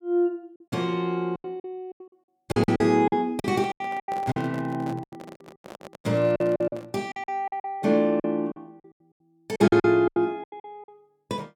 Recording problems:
packet loss; 16% of the sound replaced, filled with silence
handling noise; from 3.5 to 7 s; peak -9 dB vs average level

